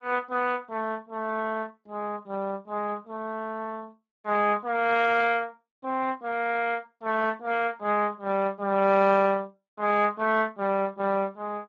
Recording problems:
lossy compression; Speex, log-spectral distance 3 dB

